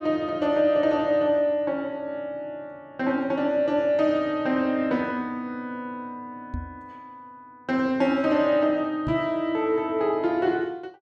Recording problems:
knock on the microphone; at 6.5 s and at 9 s; peak -3 dB vs average level

